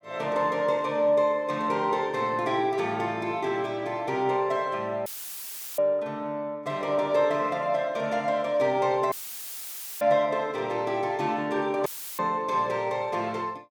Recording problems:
dropout; at 5 s for 0.5 s, at 9 s for 1 s and at 12 s; filled with static

